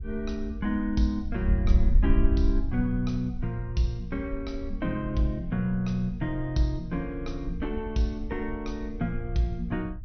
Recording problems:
low-pass filter; nothing above 6.1 kHz
wind on the microphone; below 64 Hz, SNR 3 dB

